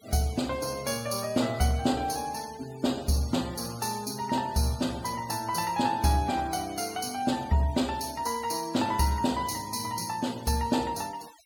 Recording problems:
denoising artefacts; signal-to-artefact ratio 17 dB

